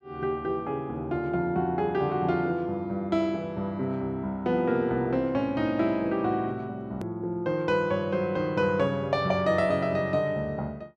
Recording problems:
click at an edit; at 7 s

